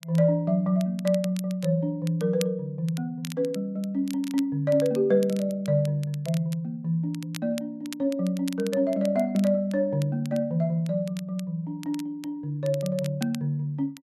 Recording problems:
crackle; vinyl, SNR 19 dB

